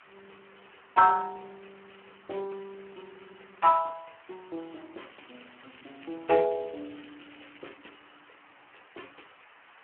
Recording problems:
phone line; 240 Hz to 2.3 kHz, Speex
background hiss; SNR 27 dB
crackle; from 5 to 7.5 s; loose cable, SNR 27 dB

